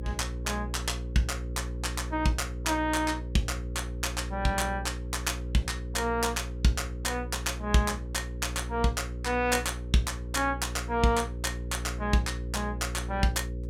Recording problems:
mains hum; 60 Hz, harmonics up to 540 Hz, SNR 6 dB

